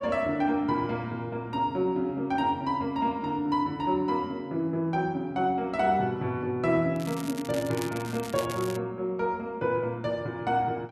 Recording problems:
crackling; from 7 to 9 s; loose cable, SNR 14 dB

